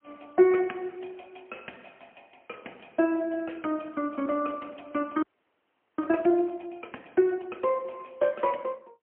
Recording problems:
telephone audio; 240 Hz to 3.1 kHz, AMR-NB, then MP3
frozen audio; at 5 s for 1 s

